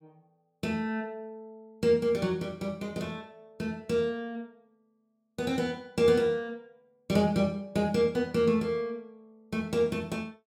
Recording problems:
none

